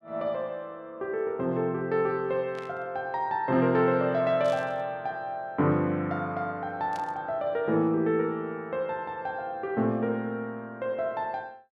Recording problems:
burst of static; at 2.5 s, at 4.5 s and at 7 s; peak -13 dB vs average level

